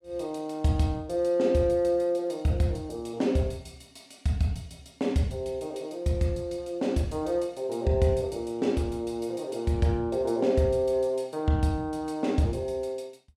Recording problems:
none

